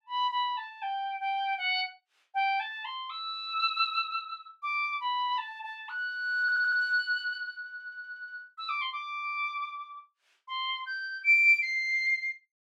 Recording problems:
audio stuttering; at 6.5 s and at 7.5 s

